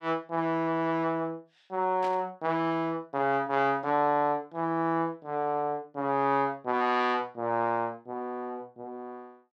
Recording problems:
burst of static; at 2 s; peak -10 dB vs average level

